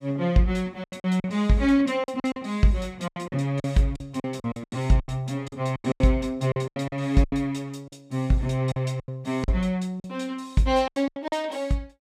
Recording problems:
lost packets; 14% of the sound replaced, filled with silence

